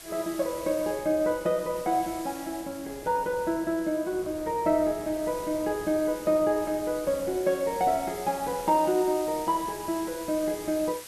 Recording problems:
hiss; SNR 16 dB
wind on the microphone; below 610 Hz, SNR 22 dB

